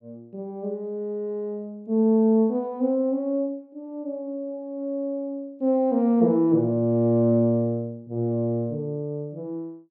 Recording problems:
none

